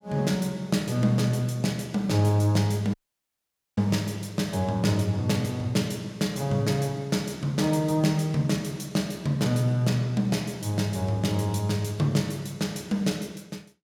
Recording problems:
dropout; at 3 s for 1 s

